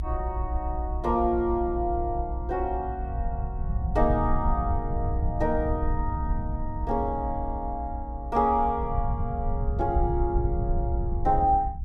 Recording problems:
rumble; below 80 Hz, SNR 3 dB

